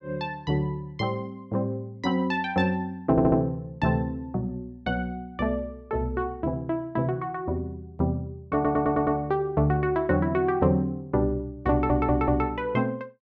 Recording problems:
stutter; at 3 s, at 8.5 s and at 12 s

